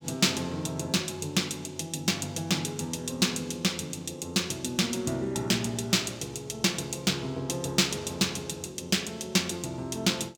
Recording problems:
none

